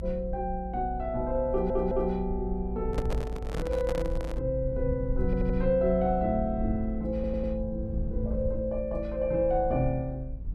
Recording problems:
rumble; below 62 Hz, SNR 6 dB
audio stuttering; at 1.5 s, at 5.5 s and at 7 s
handling noise; from 3 to 4.5 s; peak -2 dB vs average level

